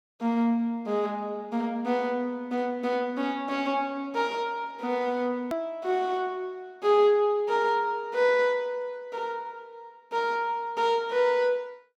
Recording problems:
click at an edit; at 5.5 s

